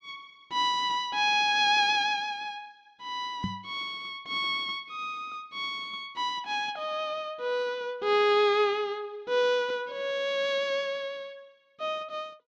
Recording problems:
microphone bump; at 3.5 s; peak 0 dB vs average level

